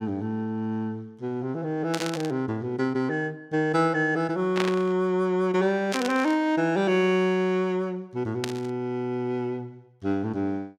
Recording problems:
static burst; 4 times, first at 2 s; peak +2 dB vs average level

